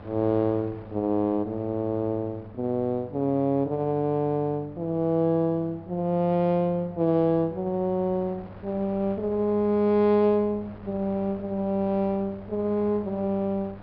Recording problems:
treble missing; nothing above 5.5 kHz
hum; 50 Hz, harmonics up to 800 Hz, SNR 20 dB
wind on the microphone; below 890 Hz, SNR 24 dB

